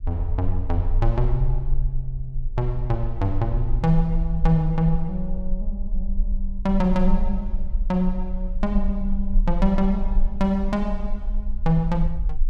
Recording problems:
low-frequency rumble; below 38 Hz, strongest tone 20 Hz, SNR 4 dB

